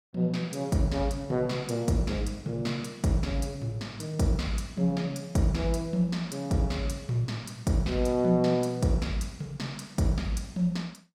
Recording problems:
none

